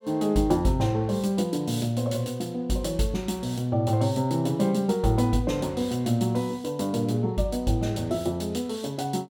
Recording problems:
none

